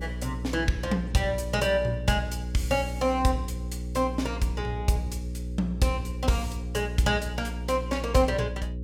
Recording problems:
hum; 60 Hz, harmonics up to 540 Hz, SNR 7 dB

